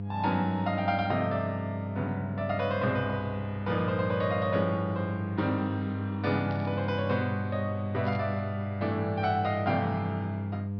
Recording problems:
treble cut off; nothing above 5.5 kHz
hum; 50 Hz, harmonics up to 700 Hz, SNR 4 dB
static burst; at 6.5 s and at 8 s; peak -14 dB vs average level

